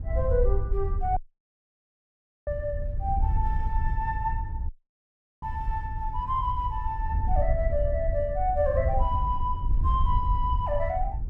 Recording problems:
wind on the microphone; below 72 Hz, SNR 0 dB
dropout; at 1 s for 1.5 s and at 4.5 s for 0.5 s

